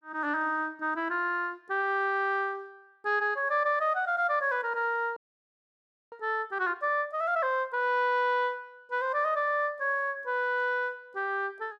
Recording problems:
audio freezing; at 5 s for 1 s

